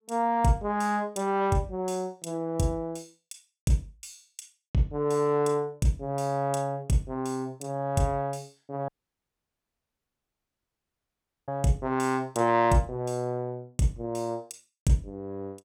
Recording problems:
audio cutting out; at 9 s for 2.5 s

